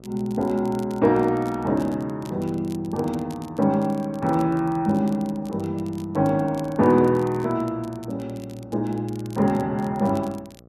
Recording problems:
hum; 60 Hz, harmonics up to 1.3 kHz, SNR 25 dB
crackle; vinyl, SNR 26 dB

